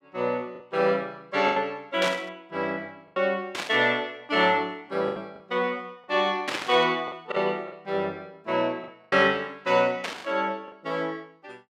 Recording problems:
lost packets; 5% of the sound replaced, filled with the last packet
burst of static; 4 times, first at 2 s; peak +1 dB vs average level

